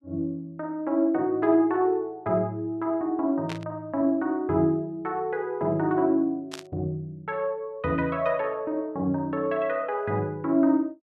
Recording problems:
burst of static; at 3.5 s and at 6.5 s; peak -5 dB vs average level

